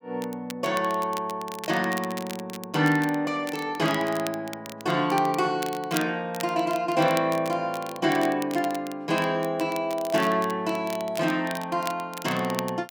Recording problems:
crackle; vinyl, SNR 14 dB

